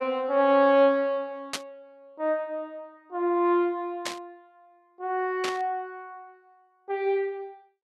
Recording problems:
burst of static; at 1.5 s, at 4 s and at 5.5 s; peak 0 dB vs average level

